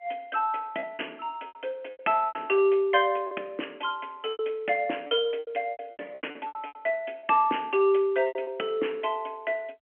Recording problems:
phone line; 240 Hz to 3.3 kHz, G.711
packet loss; 12% of the sound replaced, filled with repeated pitch periods

